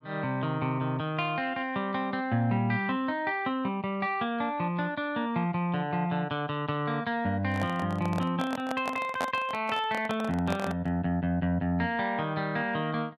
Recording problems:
handling noise; from 7.5 to 11 s; peak +1 dB vs average level

